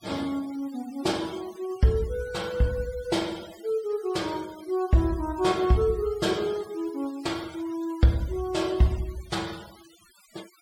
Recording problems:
noise reduction artefacts; signal-to-artefact ratio 20 dB

